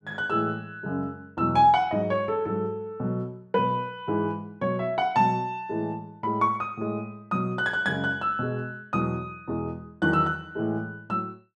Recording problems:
none

